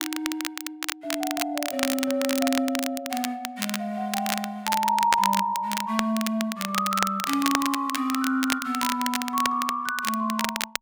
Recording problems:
crackling; vinyl, SNR 4 dB

